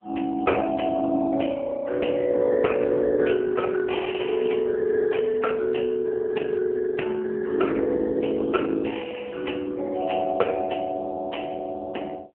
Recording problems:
phone line; 240 Hz to 3.2 kHz, AMR-NB

